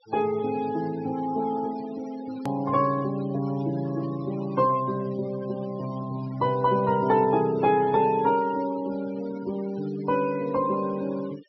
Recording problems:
low-pass filter; nothing above 5.7 kHz
noise reduction artefacts; signal-to-artefact ratio 20 dB
click at an edit; at 2.5 s

